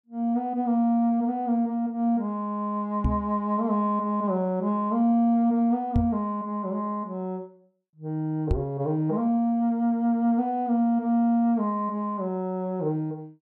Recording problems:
microphone bump; at 3 s, at 6 s and at 8.5 s; peak +4 dB vs average level

